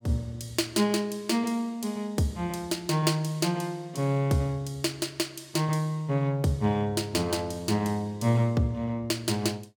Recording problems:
none

